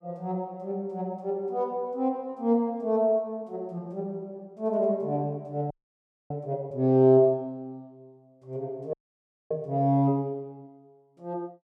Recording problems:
audio freezing; at 5.5 s for 0.5 s and at 9 s for 0.5 s

